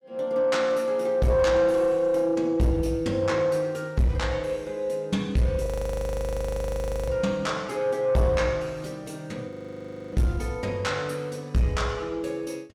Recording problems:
distorted audio; soft clipping, signal-to-distortion ratio 11 dB
frozen audio; at 5.5 s for 1.5 s and at 9.5 s for 0.5 s

